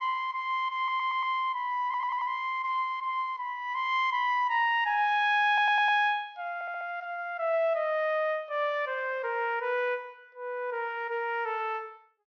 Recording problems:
low-pass filter; nothing above 6.4 kHz
stutter; 4 times, first at 1 s

